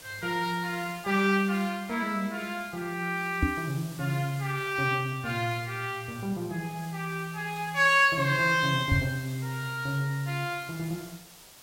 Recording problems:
hiss; slope -1 dB per octave, SNR 18 dB
microphone thump; at 3.5 s and at 9 s; peak +6 dB vs average level

